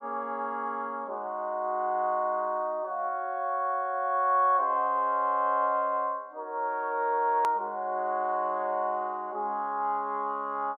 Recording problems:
click at an edit; at 7.5 s

